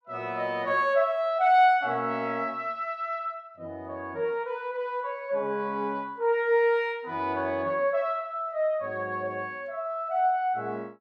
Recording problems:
none

